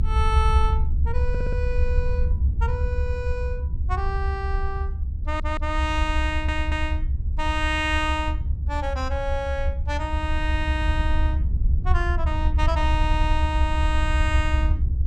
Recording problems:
low-frequency rumble; below 74 Hz, SNR -3 dB
stutter; 4 times, first at 1.5 s

